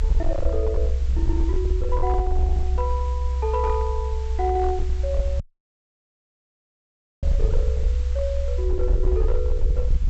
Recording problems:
treble missing; nothing above 7.9 kHz
distortion; hard clipping, signal-to-distortion ratio 11 dB
background hiss; slope -1 dB per octave, SNR 19 dB
rumble; below 66 Hz, SNR -4 dB
dropout; at 5.5 s for 2 s

